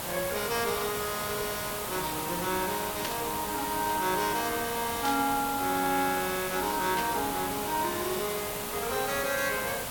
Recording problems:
hiss; SNR 3 dB
static burst; at 3 s, at 5 s and at 7 s; peak 0 dB vs average level

